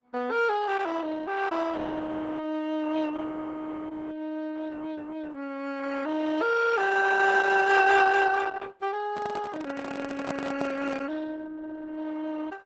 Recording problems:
lossy compression; Opus, log-spectral distance 4 dB, nothing above 7.3 kHz
microphone handling noise; from 9 to 11 s; peak -2 dB vs average level

